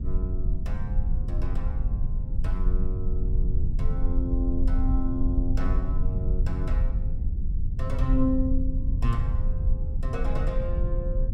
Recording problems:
low-frequency rumble; below 62 Hz, SNR -6 dB

